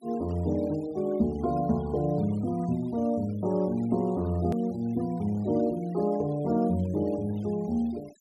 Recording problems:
denoising artefacts; signal-to-artefact ratio 25 dB
hard cut with a click; at 4.5 s

